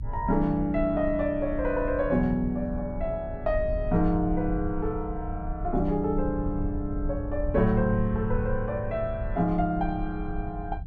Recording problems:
rumble; below 78 Hz, SNR 8 dB

